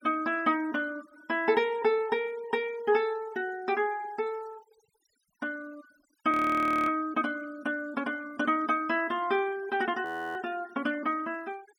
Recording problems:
noise reduction artefacts; signal-to-artefact ratio 24 dB
audio freezing; at 6.5 s for 0.5 s and at 10 s

